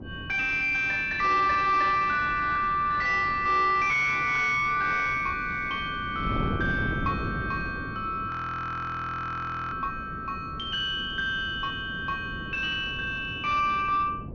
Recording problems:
low-pass filter; nothing above 6.4 kHz
distortion; soft clipping, signal-to-distortion ratio 10 dB
wind noise; below 310 Hz, SNR 12 dB
frozen audio; at 8.5 s for 1.5 s

